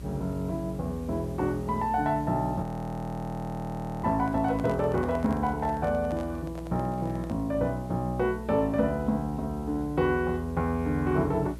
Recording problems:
hum; 60 Hz, harmonics up to 600 Hz, SNR 14 dB
background hiss; slope -2 dB per octave, SNR 28 dB
audio freezing; at 2.5 s for 1.5 s
handling noise; from 4 to 7.5 s; peak -7 dB vs average level

